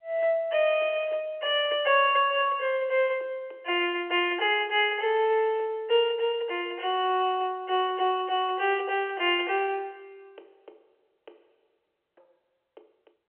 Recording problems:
phone line; 300 Hz to 3.2 kHz, G.711

